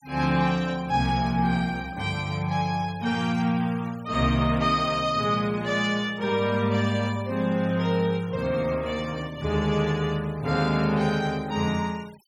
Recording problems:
noise reduction artefacts; signal-to-artefact ratio 23 dB

